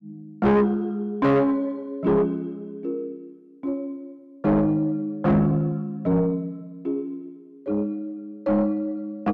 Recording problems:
distorted audio; soft clipping, signal-to-distortion ratio 6 dB

